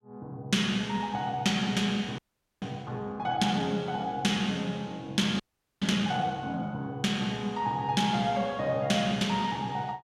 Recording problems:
frozen audio; at 2 s and at 5.5 s

